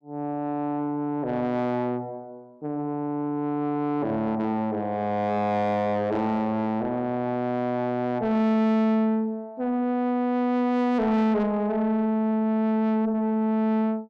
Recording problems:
distorted audio; soft clipping, signal-to-distortion ratio 10 dB

